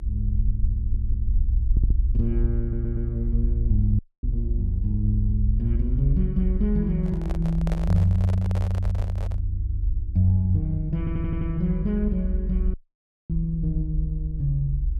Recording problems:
hum; 60 Hz, harmonics up to 360 Hz, SNR 24 dB
rumble; below 62 Hz, strongest tone 40 Hz, SNR 1 dB
audio stuttering; 4 times, first at 1 s
dropout; at 4 s and at 13 s for 0.5 s
handling noise; from 7 to 9.5 s; peak -5 dB vs average level

